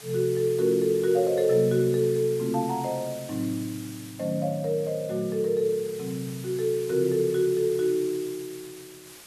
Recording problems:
background hiss; slope 0 dB per octave, SNR 18 dB

